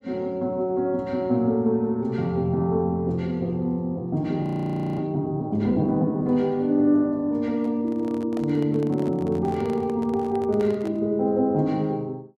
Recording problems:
audio freezing; at 4.5 s for 0.5 s
handling noise; from 7.5 to 11 s; peak -10 dB vs average level

